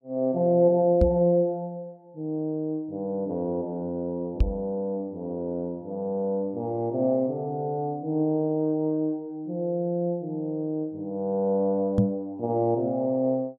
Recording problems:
microphone bump; at 1 s, at 4.5 s and at 12 s; peak +8 dB vs average level

